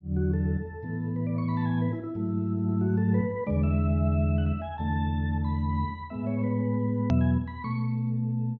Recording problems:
low-pass filter; nothing above 6.3 kHz
click at an edit; at 7 s

